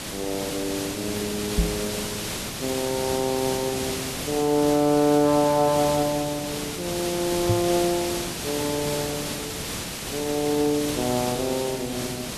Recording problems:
hiss; slope -2 dB per octave, SNR 5 dB
microphone bump; at 1.5 s and at 7.5 s; peak +6 dB vs average level

